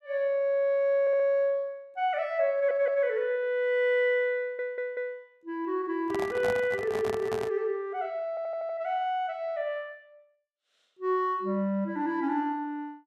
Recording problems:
audio stuttering; 4 times, first at 1 s
microphone handling noise; from 6 to 7.5 s; peak -2 dB vs average level

